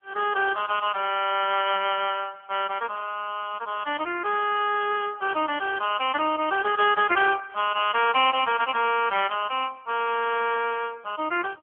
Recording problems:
phone line; 260 Hz to 3.3 kHz, AMR-NB

